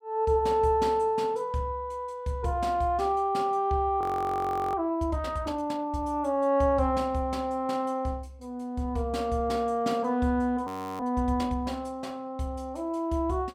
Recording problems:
audio freezing; at 4 s for 0.5 s and at 11 s

